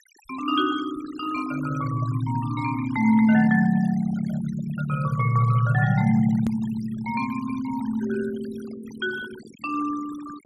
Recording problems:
noise reduction artefacts; signal-to-artefact ratio 18 dB
edit click; at 6.5 s

